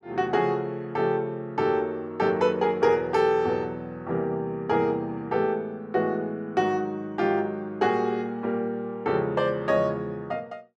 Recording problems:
none

